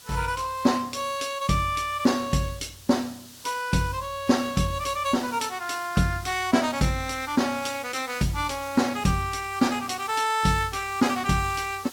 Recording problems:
lossy compression; Opus, log-spectral distance 4 dB, nothing above 17 kHz
hiss; SNR 18 dB

